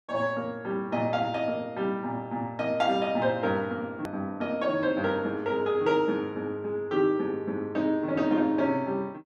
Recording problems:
click at an edit; at 4 s

